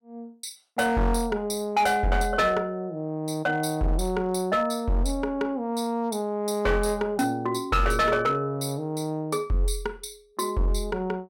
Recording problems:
distortion; hard clipping, signal-to-distortion ratio 10 dB

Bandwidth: 16.5 kHz